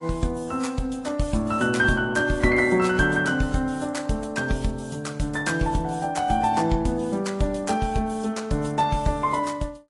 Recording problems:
lossy codec; AAC, then MP3, log-spectral distance 3 dB, nothing above 11 kHz

